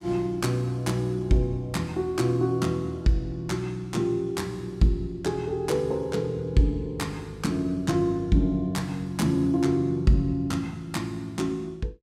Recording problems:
none

